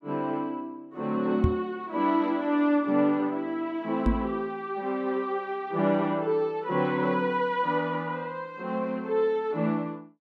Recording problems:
knock on the microphone; at 1.5 s and at 4 s; peak +7 dB vs average level

